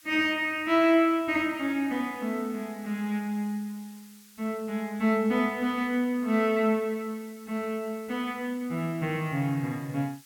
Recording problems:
background hiss; SNR 25 dB

